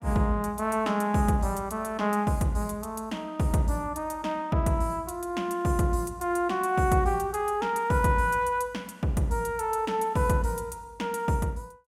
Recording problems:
none

